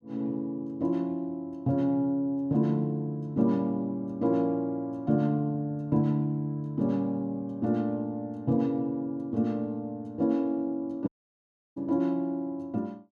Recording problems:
audio cutting out; at 11 s for 0.5 s

